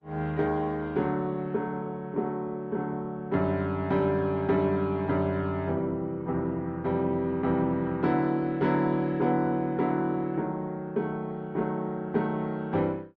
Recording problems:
codec artefacts; Opus, log-spectral distance 2 dB

